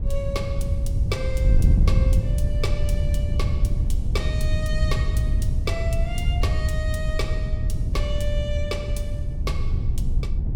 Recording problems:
wind noise; below 94 Hz, SNR -9 dB

